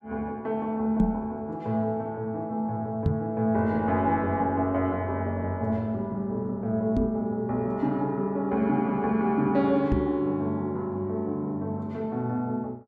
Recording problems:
microphone bump; 4 times, first at 1 s; peak +6 dB vs average level

